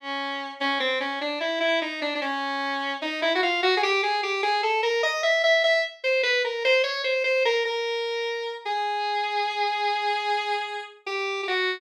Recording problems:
none

